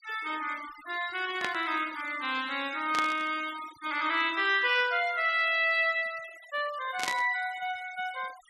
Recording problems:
noise reduction artefacts; signal-to-artefact ratio 18 dB
burst of static; at 1.5 s, at 3 s and at 7 s; peak 0 dB vs average level

